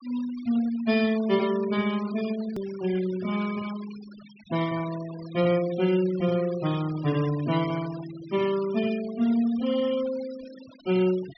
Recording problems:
low-pass filter; nothing above 5.7 kHz
noise reduction artefacts; signal-to-artefact ratio 17 dB
hard cut with a click; at 2.5 s

